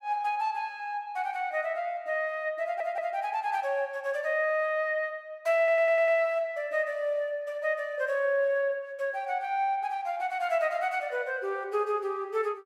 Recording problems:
stutter; at 2.5 s and at 5.5 s

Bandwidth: 16 kHz